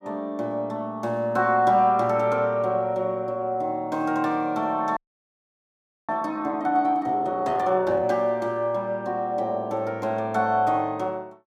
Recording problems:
frozen audio; at 5 s for 1 s

